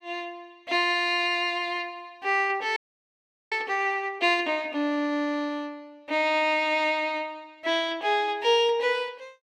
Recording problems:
frozen audio; at 3 s for 1 s

